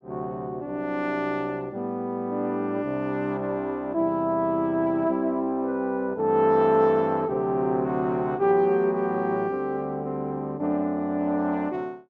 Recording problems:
none

